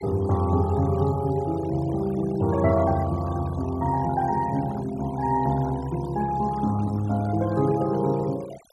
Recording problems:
noise reduction artefacts; signal-to-artefact ratio 19 dB

